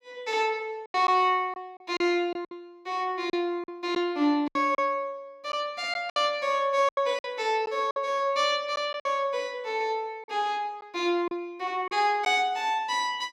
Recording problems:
lost packets; 7% of the sound replaced, filled with silence

